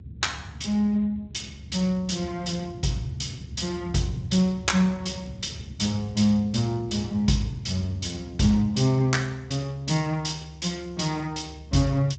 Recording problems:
lossy codec; Speex, log-spectral distance 5 dB, nothing above 7.6 kHz
low-frequency rumble; below 170 Hz, strongest tone 72 Hz, SNR 15 dB

